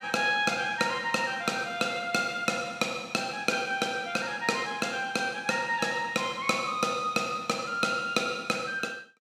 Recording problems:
none

